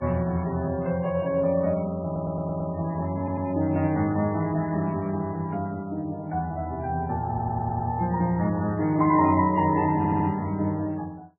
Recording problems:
lossy compression; MP3, log-spectral distance 2 dB, nothing above 2.8 kHz
audio stuttering; 4 times, first at 2 s

